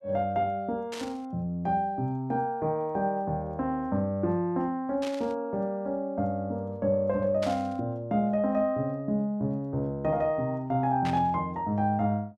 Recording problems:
burst of static; 4 times, first at 1 s; peak -5 dB vs average level

